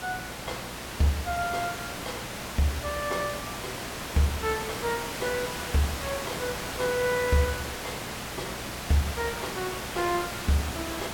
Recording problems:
hum; 60 Hz, harmonics up to 720 Hz, SNR 19 dB
background hiss; slope -3 dB per octave, SNR 4 dB

